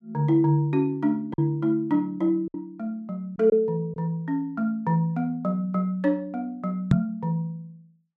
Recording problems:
packet loss; 2% of the sound replaced, filled with silence
knock on the microphone; at 7 s; peak +10 dB vs average level

